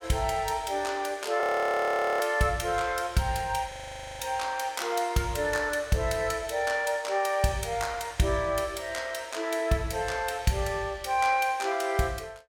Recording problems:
audio freezing; at 1.5 s for 1 s and at 3.5 s

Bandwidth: 17.5 kHz